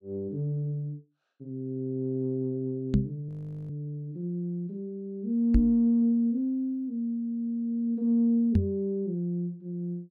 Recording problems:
knock on the microphone; at 3 s, at 5.5 s and at 8.5 s; peak +8 dB vs average level
frozen audio; at 3.5 s

